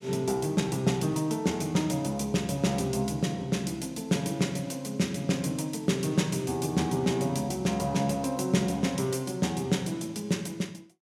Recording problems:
none

